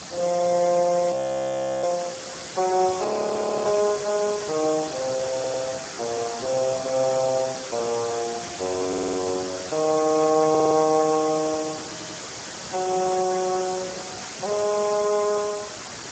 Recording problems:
codec artefacts; Speex, log-spectral distance 17 dB, nothing above 7.3 kHz
background hiss; SNR 9 dB
audio freezing; at 1 s for 0.5 s and at 3 s for 0.5 s
static burst; at 4 s, at 8.5 s and at 14 s; peak -14 dB vs average level
stutter; 4 times, first at 5.5 s

